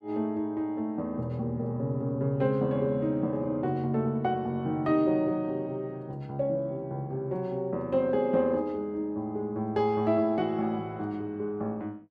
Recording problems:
none

